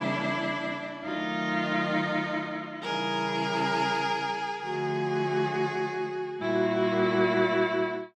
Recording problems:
none

